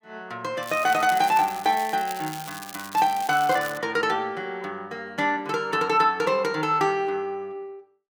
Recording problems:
crackle; from 0.5 to 4 s; loose cable, SNR 15 dB

